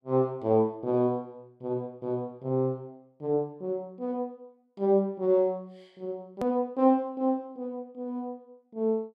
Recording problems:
hard cut with a click; at 6.5 s

